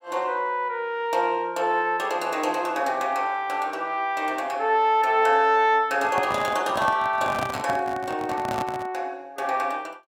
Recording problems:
handling noise; from 6 to 9 s; peak -1 dB vs average level

